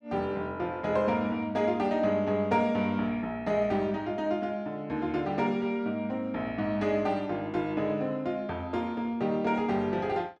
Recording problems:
none

